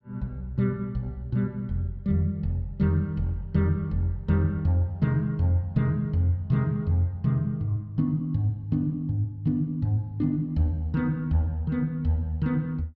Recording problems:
none

